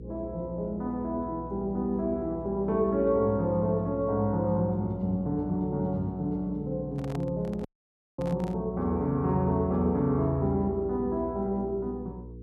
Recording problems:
hum; 60 Hz, harmonics up to 480 Hz, SNR 14 dB
microphone handling noise; from 7 to 8.5 s; peak -9 dB vs average level
dropout; at 7.5 s for 0.5 s

